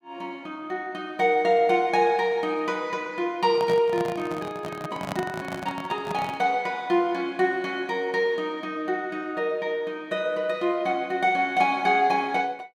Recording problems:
microphone handling noise; from 3.5 to 6.5 s; peak -2 dB vs average level

